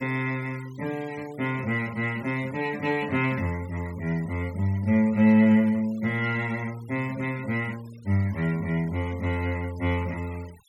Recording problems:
denoising artefacts; signal-to-artefact ratio 23 dB

